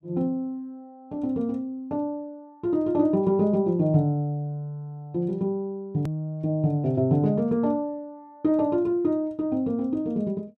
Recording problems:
hard cut with a click; at 6 s

